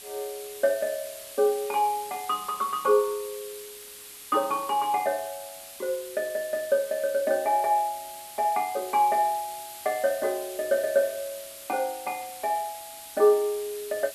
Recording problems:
hiss; slope +2 dB per octave, SNR 14 dB

